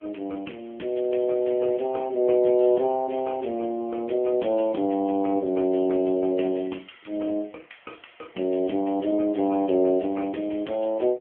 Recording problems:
phone line; 190 Hz to 3.3 kHz, AMR-NB

